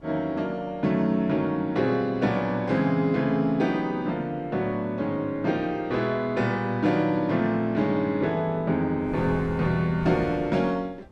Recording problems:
wind on the microphone; below 400 Hz, SNR 20 dB

